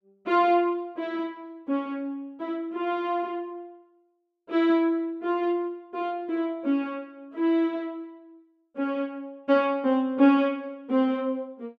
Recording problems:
none

